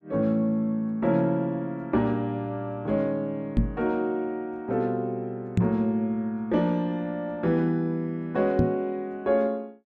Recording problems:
knock on the microphone; at 3.5 s, at 5.5 s and at 8.5 s; peak +8 dB vs average level

